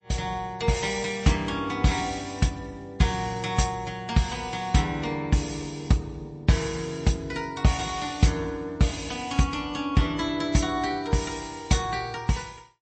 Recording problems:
lossy compression; MP3, log-spectral distance 4 dB, nothing above 8.2 kHz

